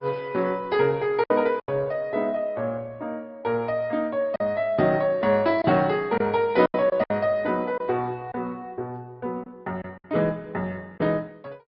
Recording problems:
treble cut off; nothing above 5.2 kHz
lossy compression; Opus, log-spectral distance 2 dB
lost packets; 5% of the sound replaced, filled with silence

